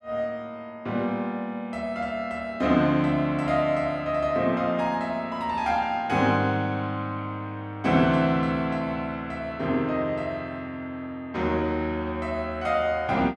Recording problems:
none

